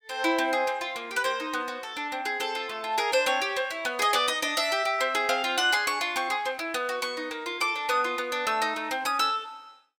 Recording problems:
none

